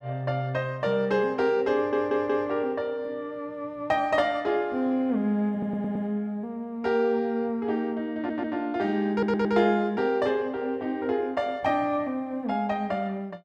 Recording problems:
audio stuttering; 4 times, first at 1.5 s

